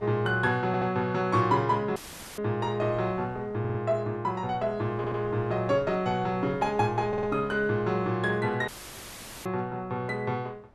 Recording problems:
wind noise; below 700 Hz, SNR 23 dB
audio stuttering; 4 times, first at 0.5 s
audio cutting out; at 2 s and at 8.5 s for 1 s; filled with static

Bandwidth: 13 kHz